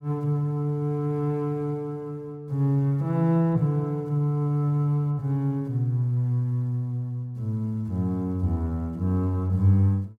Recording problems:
none

